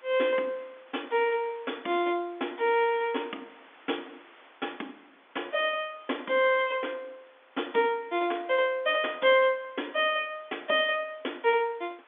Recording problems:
phone line; 220 Hz to 3.6 kHz, G.711
hiss; SNR 27 dB

